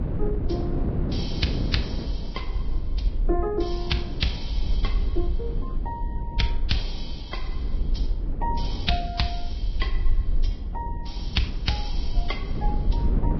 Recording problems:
codec artefacts; Vorbis, log-spectral distance 3 dB, nothing above 5.5 kHz
rumble; below 50 Hz, SNR 0 dB
wind on the microphone; below 270 Hz, SNR 3 dB

